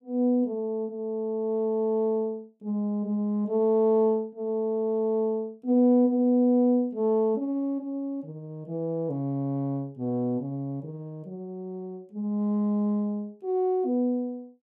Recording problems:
none

